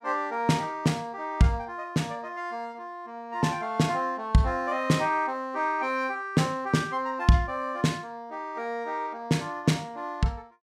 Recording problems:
none

